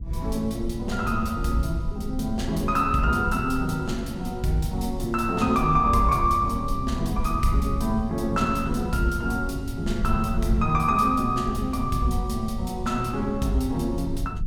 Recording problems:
low-frequency rumble; below 96 Hz, SNR 8 dB

